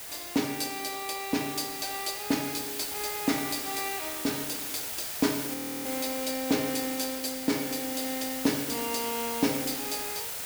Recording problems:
hiss; slope 0 dB per octave, SNR 2 dB
audio freezing; at 5.5 s

